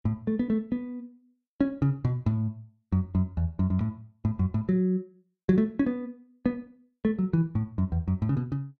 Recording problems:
none

